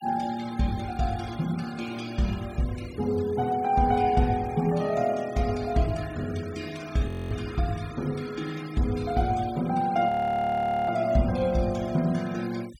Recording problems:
denoising artefacts; signal-to-artefact ratio 20 dB
frozen audio; at 7 s and at 10 s for 1 s

